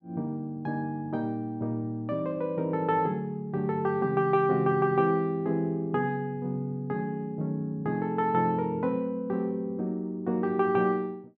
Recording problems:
none

